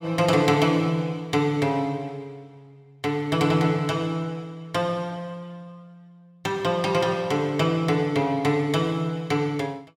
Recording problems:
none

